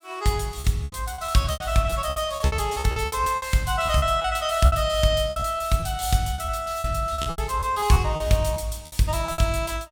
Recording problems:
packet loss; 16% of the sound replaced, filled with repeated pitch periods

